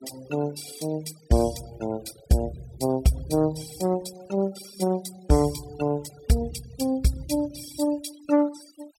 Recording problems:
noise reduction artefacts; signal-to-artefact ratio 19 dB

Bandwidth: 16.5 kHz